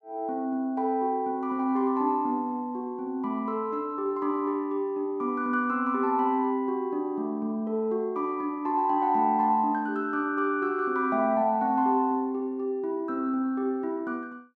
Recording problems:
none

